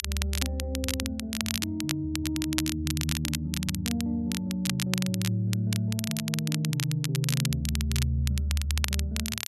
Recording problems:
crackling; vinyl, SNR 4 dB

